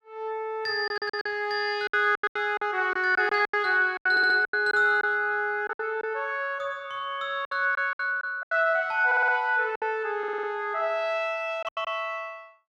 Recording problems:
lost packets; 10% of the sound replaced, filled with silence
stutter; 4 times, first at 1 s

